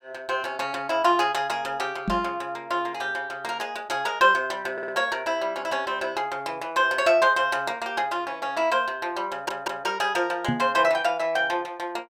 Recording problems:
microphone thump; at 2 s and at 10 s; peak +2 dB vs average level
stutter; at 4.5 s and at 9.5 s

